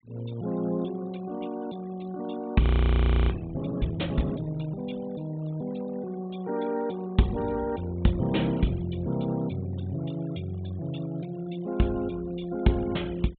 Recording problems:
treble cut off; nothing above 4 kHz
denoising artefacts; signal-to-artefact ratio 22 dB
frozen audio; at 2.5 s for 0.5 s

